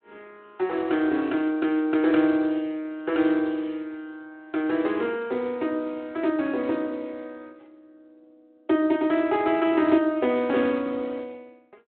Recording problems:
phone line; 220 Hz to 3.3 kHz, Speex

